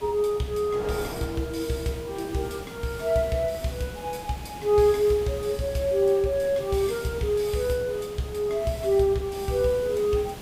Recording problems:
background hiss; SNR 16 dB
wind noise; below 810 Hz, SNR 19 dB

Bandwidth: 15.5 kHz